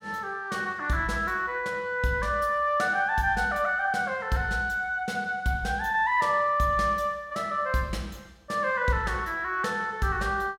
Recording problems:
none

